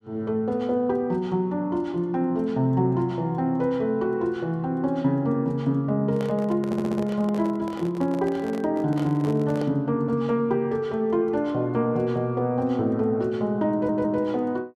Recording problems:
handling noise; from 6 to 9.5 s; peak -5 dB vs average level
audio stuttering; at 6.5 s and at 14 s

